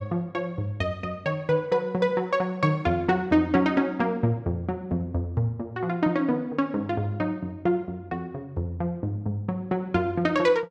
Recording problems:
none

